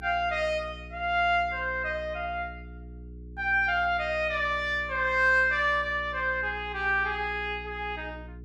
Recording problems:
hum; 60 Hz, harmonics up to 420 Hz, SNR 17 dB

